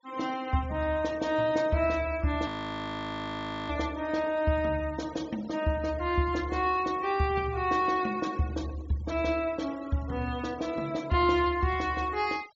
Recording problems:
treble missing; nothing above 8 kHz
noise reduction artefacts; signal-to-artefact ratio 22 dB
frozen audio; at 2.5 s for 1 s

